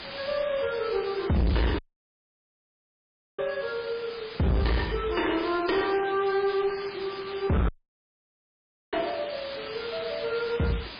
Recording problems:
codec artefacts; MP3, log-spectral distance 16 dB, nothing above 4.6 kHz
distorted audio; hard clipping, uneven, signal-to-distortion ratio 5 dB
hiss; SNR 11 dB
audio cutting out; at 2 s for 1.5 s and at 7.5 s for 1 s

